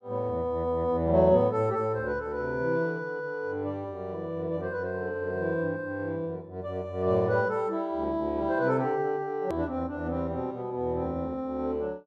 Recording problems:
click at an edit; at 9.5 s

